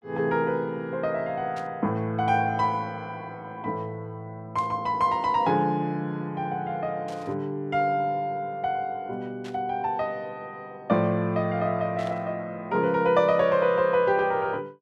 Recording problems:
burst of static; 5 times, first at 1.5 s; peak -13 dB vs average level

